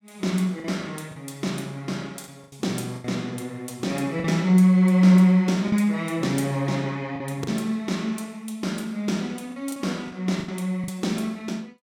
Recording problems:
packet loss; 6% of the sound replaced, filled with the last packet

